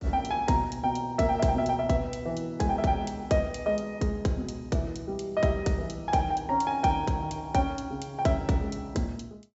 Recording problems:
low-pass filter; nothing above 7.6 kHz

